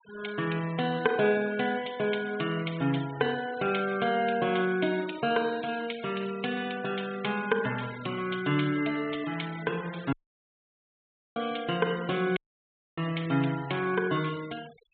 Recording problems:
treble missing; nothing above 4 kHz
noise reduction artefacts; signal-to-artefact ratio 17 dB
dropout; at 10 s for 1 s and at 12 s for 0.5 s

